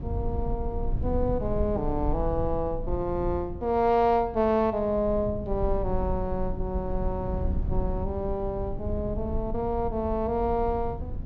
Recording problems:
low-pass filter; nothing above 7 kHz
rumble; below 96 Hz, SNR 6 dB

